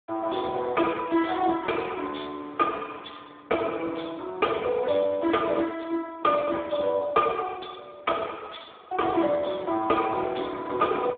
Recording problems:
telephone audio; 260 Hz to 2.2 kHz, Speex

